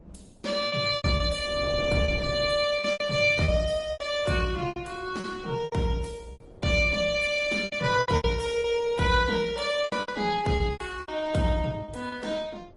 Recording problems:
codec artefacts; Opus, then MP3, log-spectral distance 4 dB, nothing above 11 kHz
wind on the microphone; below 410 Hz, SNR 19 dB
lost packets; 12% of the sound replaced, filled with repeated pitch periods

